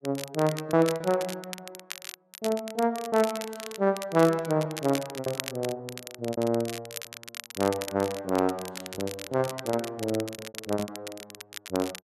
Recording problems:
crackling; vinyl, SNR 11 dB
packet loss; 9% of the sound replaced, filled with repeated pitch periods

